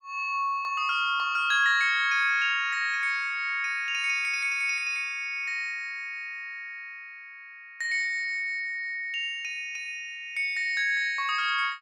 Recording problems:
none

